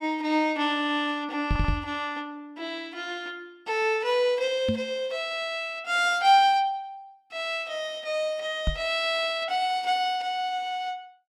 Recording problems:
audio stuttering; at 1.5 s
microphone bump; at 1.5 s, at 4.5 s and at 8.5 s; peak +3 dB vs average level

